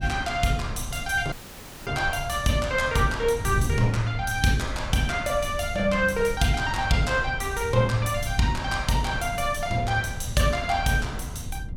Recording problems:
wind noise; below 110 Hz, SNR 10 dB
audio cutting out; at 1.5 s for 0.5 s

